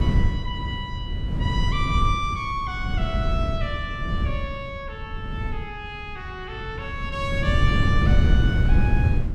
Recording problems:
wind noise; below 120 Hz, SNR -5 dB

